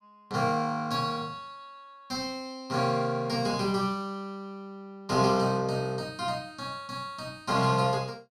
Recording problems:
none

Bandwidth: 14.5 kHz